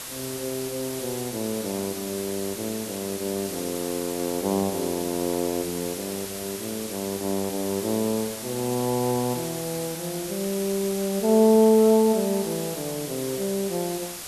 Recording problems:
background hiss; slope -1 dB per octave, SNR 8 dB

